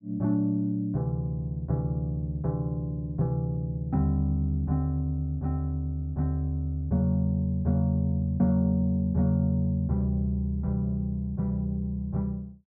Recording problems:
none

